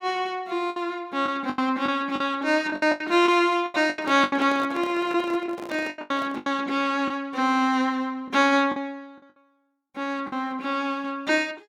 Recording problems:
lost packets; 10% of the sound replaced, filled with the last packet
microphone handling noise; from 4 to 6.5 s; peak -7 dB vs average level

